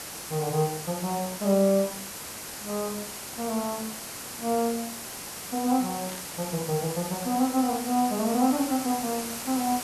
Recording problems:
hiss; slope -2 dB per octave, SNR 7 dB
burst of static; at 6 s; peak -11 dB vs average level

